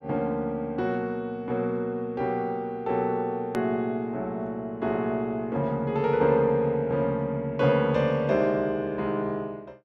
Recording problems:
click at an edit; at 3.5 s

